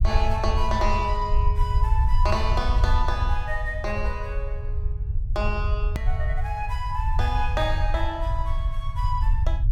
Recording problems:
low-frequency rumble; below 74 Hz, SNR -3 dB
edit click; at 6 s

